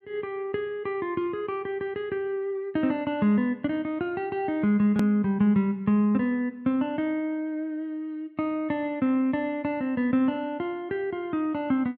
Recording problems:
hard cut with a click; at 5 s

